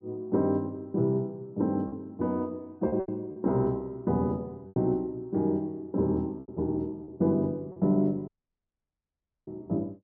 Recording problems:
lost packets; 4% of the sound replaced, filled with repeated pitch periods
dropout; at 8.5 s for 1 s

